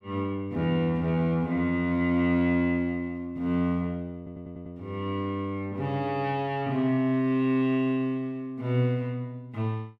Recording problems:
stutter; at 4 s

